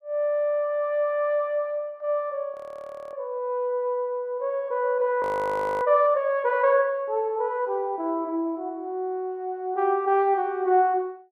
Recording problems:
frozen audio; at 2.5 s for 0.5 s and at 5 s for 0.5 s

